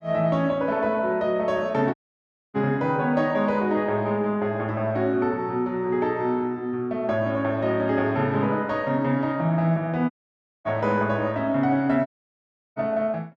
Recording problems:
audio cutting out; at 2 s for 0.5 s, at 10 s for 0.5 s and at 12 s for 0.5 s

